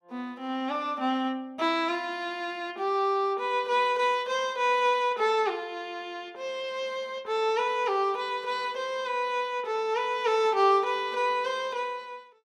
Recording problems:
none

